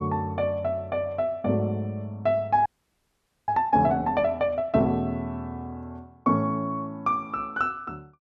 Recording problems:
audio freezing; at 2.5 s for 1 s

